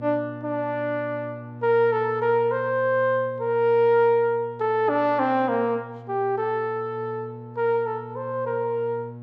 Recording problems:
hum; 60 Hz, harmonics up to 840 Hz, SNR 16 dB

